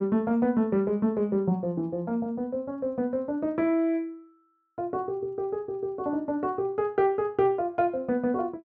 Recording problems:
none

